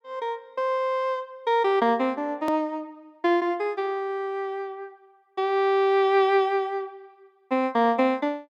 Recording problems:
hard cut with a click; at 2.5 s

